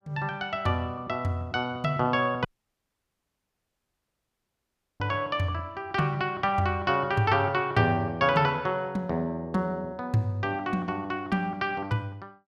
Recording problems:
audio cutting out; at 2.5 s for 2.5 s

